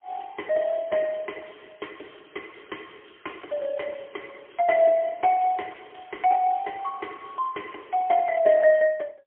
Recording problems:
phone line; 280 Hz to 3.3 kHz, AMR-NB, then MP3

